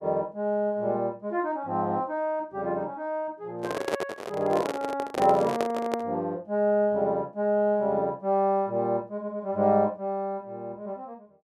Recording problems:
microphone handling noise; from 3.5 to 6 s; peak +4 dB vs average level

